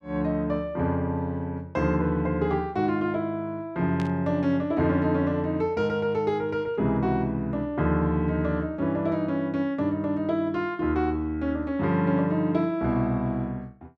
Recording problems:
static burst; at 4 s; peak -10 dB vs average level

